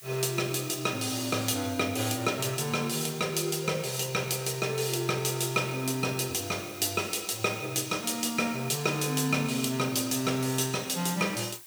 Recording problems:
hiss; slope +2 dB per octave, SNR 18 dB

